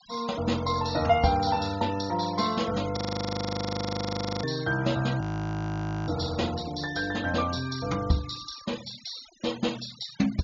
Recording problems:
low-pass filter; nothing above 7 kHz
denoising artefacts; signal-to-artefact ratio 16 dB
audio freezing; at 3 s for 1.5 s and at 5 s for 1 s

